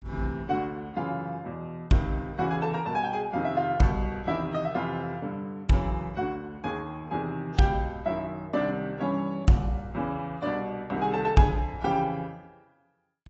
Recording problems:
lossy compression; AAC, log-spectral distance 2 dB, nothing above 7.8 kHz

